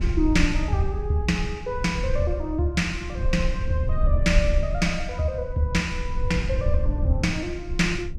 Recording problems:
low-frequency rumble; below 72 Hz, SNR 3 dB

